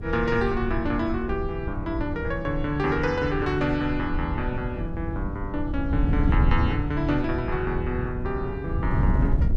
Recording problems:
wind noise; below 120 Hz, SNR 2 dB

